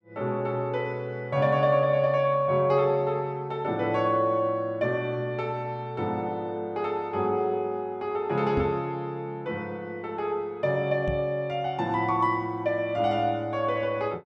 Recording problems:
knock on the microphone; at 8.5 s and at 11 s; peak 0 dB vs average level

